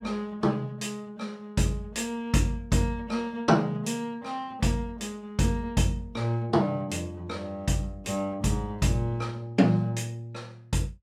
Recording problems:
none

